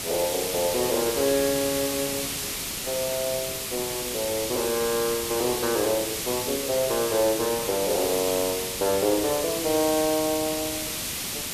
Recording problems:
hiss; SNR 2 dB

